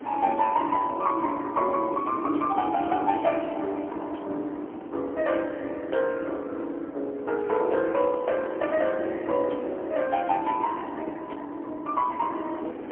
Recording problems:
telephone audio; 240 Hz to 3.2 kHz, AMR-NB, then MP3
wind noise; below 600 Hz, SNR 14 dB

